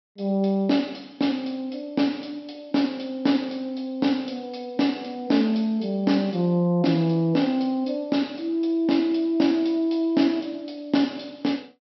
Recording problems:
low-pass filter; nothing above 5.6 kHz

